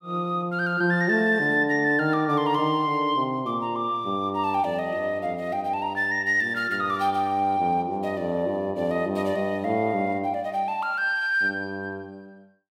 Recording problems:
none

